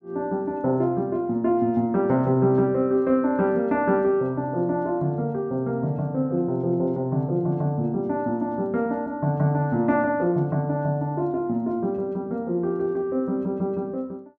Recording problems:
none

